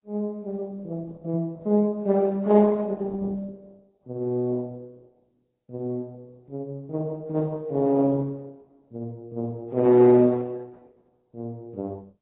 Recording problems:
codec artefacts; Opus, then AAC, log-spectral distance 2 dB, nothing above 10.7 kHz

